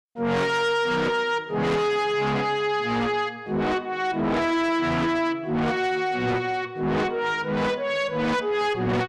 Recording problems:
distortion; soft clipping, signal-to-distortion ratio 7 dB

